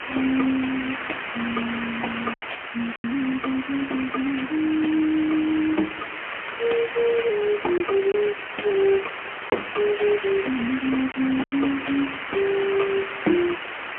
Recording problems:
telephone audio; 190 Hz to 3.2 kHz, AMR-NB, then MP3
hiss; SNR 6 dB
lost packets; 2% of the sound replaced, filled with silence
crackle; from 1 to 4 s and from 9.5 to 12 s; loose cable, SNR 27 dB

